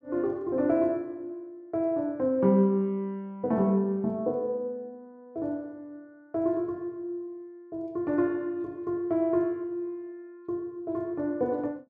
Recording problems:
none

